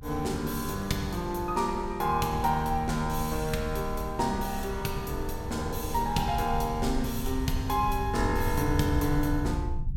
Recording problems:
low-frequency rumble; below 82 Hz, strongest tone 24 Hz, SNR 8 dB

